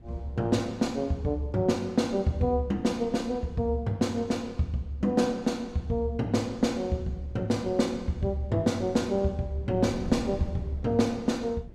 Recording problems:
wind noise; below 170 Hz, SNR 18 dB

